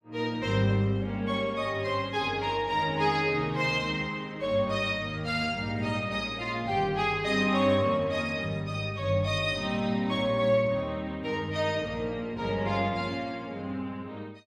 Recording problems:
none

